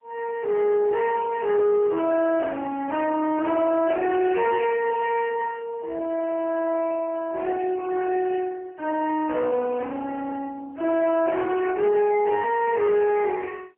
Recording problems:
phone line; 320 Hz to 2.8 kHz, AMR-NB, then MP3
distorted audio; soft clipping, signal-to-distortion ratio 11 dB

